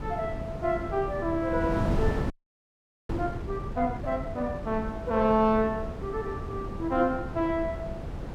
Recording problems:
wind noise; below 300 Hz, SNR 6 dB
audio freezing; at 2.5 s for 1 s

